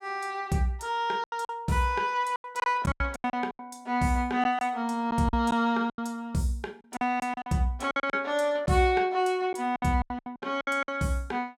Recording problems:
lost packets; 12% of the sound replaced, filled with silence

